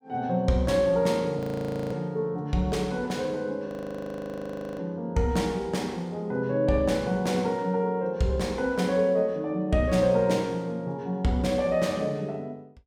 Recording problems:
frozen audio; at 1.5 s for 0.5 s and at 3.5 s for 1 s

